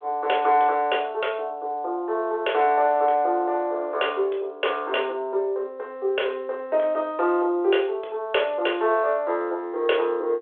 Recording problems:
telephone audio; 300 Hz to 3.5 kHz, G.726

